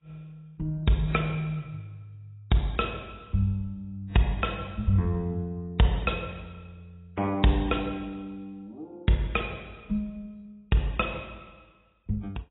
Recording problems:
lossy codec; AAC, log-spectral distance 3 dB, nothing above 3.8 kHz

